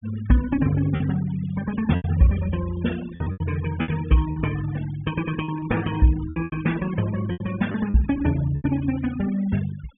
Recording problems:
low-pass filter; nothing above 3.5 kHz
noise reduction artefacts; signal-to-artefact ratio 16 dB
packet loss; 8% of the sound replaced, filled with repeated pitch periods

